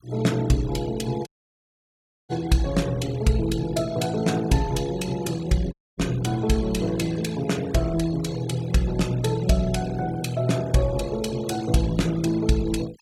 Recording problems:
noise reduction artefacts; signal-to-artefact ratio 19 dB
audio cutting out; at 1.5 s for 1 s and at 5.5 s

